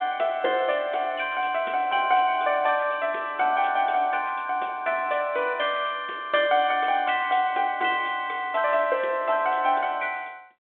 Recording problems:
phone line; 260 Hz to 3.6 kHz, G.726

